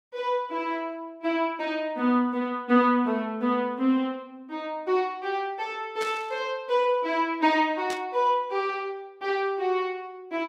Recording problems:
static burst; at 6 s and at 8 s; peak -6 dB vs average level

